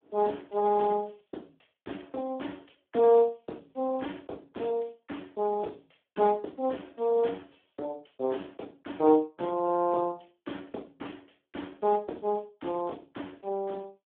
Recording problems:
phone line; 220 Hz to 3.4 kHz, Speex

